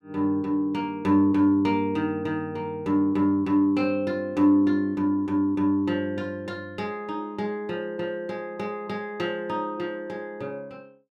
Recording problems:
none

